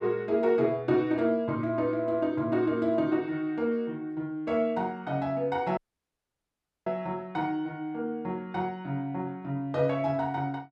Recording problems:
audio cutting out; at 6 s for 1 s

